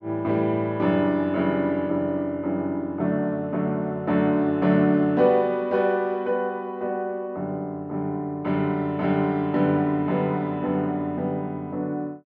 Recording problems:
none

